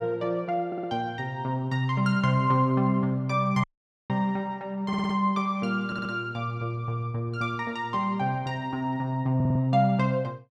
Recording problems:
stutter; 4 times, first at 0.5 s
audio cutting out; at 3.5 s

